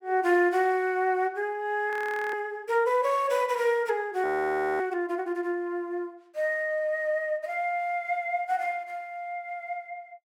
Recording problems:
audio freezing; at 2 s and at 4 s for 0.5 s

